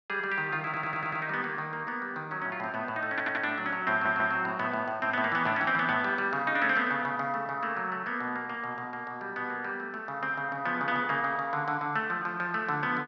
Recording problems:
audio stuttering; at 0.5 s, at 3 s and at 4 s

